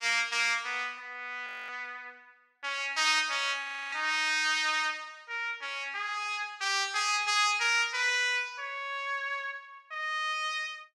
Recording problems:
audio freezing; at 1.5 s and at 3.5 s

